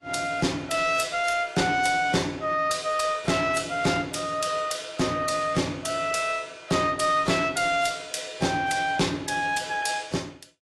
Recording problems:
codec artefacts; AAC, log-spectral distance 4 dB, nothing above 11.6 kHz
distorted audio; soft clipping, signal-to-distortion ratio 10 dB

